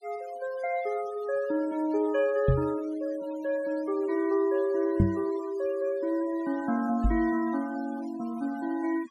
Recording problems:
noise reduction artefacts; signal-to-artefact ratio 20 dB
microphone thump; at 2.5 s, at 5 s and at 7 s; peak +9 dB vs average level

